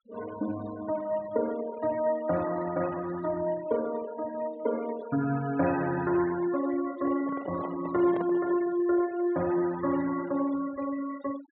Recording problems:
low-pass filter; nothing above 4 kHz
denoising artefacts; signal-to-artefact ratio 15 dB
microphone handling noise; from 7 to 8.5 s; peak -4 dB vs average level

